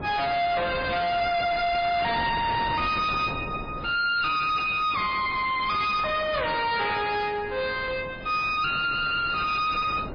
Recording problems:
lossy codec; MP3, then AAC, log-spectral distance 5 dB, nothing above 5 kHz
distorted audio; hard clipping, signal-to-distortion ratio 5 dB
wind on the microphone; below 1.1 kHz, SNR 13 dB

